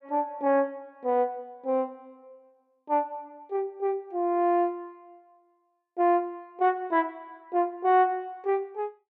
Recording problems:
none

